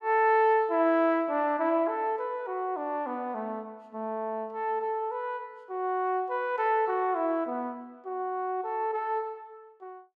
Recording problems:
none

